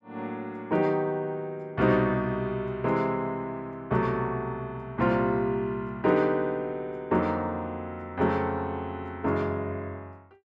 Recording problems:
none

